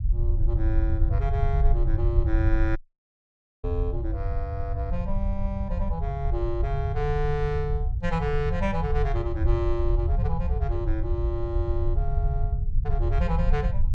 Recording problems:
rumble; below 78 Hz, SNR -4 dB
dropout; at 3 s for 1 s

